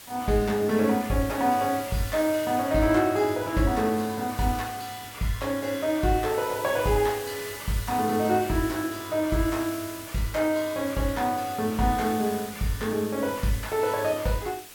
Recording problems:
hiss; slope 0 dB per octave, SNR 14 dB

